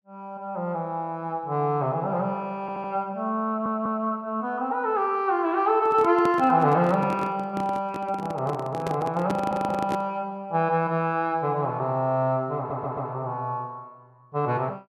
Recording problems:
audio stuttering; 4 times, first at 2.5 s
handling noise; from 5.5 to 10 s; peak -1 dB vs average level

